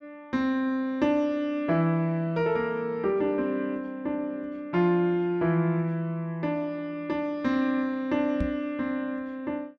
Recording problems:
knock on the microphone; at 8.5 s; peak +1 dB vs average level

